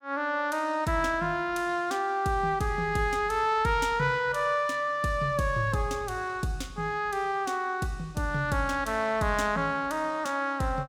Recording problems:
none

